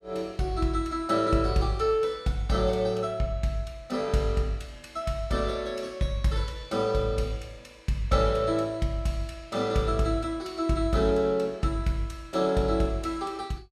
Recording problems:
none

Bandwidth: 14.5 kHz